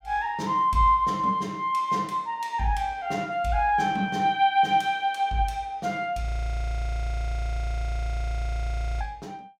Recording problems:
frozen audio; at 6.5 s for 3 s

